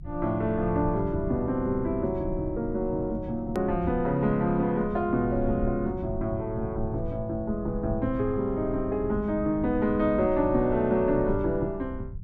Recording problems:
low-frequency rumble; below 120 Hz, SNR 11 dB
click at an edit; at 3.5 s

